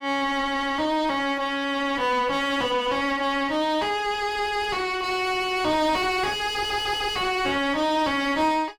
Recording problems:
distorted audio; soft clipping, signal-to-distortion ratio 2 dB

